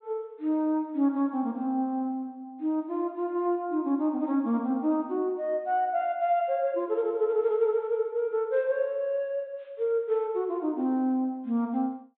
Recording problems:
low-pass filter; nothing above 4 kHz

